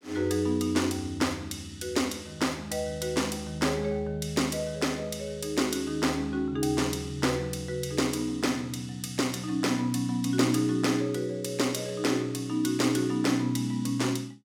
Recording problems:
none

